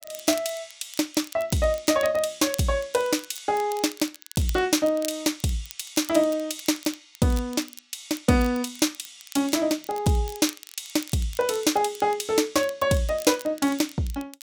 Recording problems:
crackling; vinyl, SNR 18 dB

